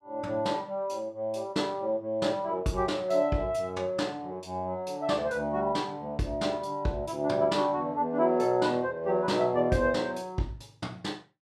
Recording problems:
none

